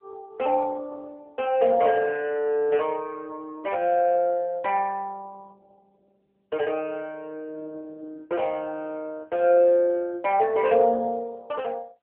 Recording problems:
phone line; 320 Hz to 3.5 kHz, AMR-NB

